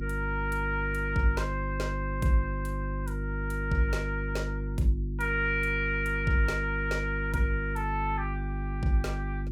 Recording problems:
hum; 50 Hz, harmonics up to 350 Hz, SNR 3 dB

